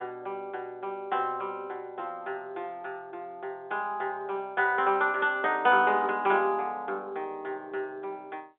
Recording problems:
phone line; 320 Hz to 3.7 kHz, G.711

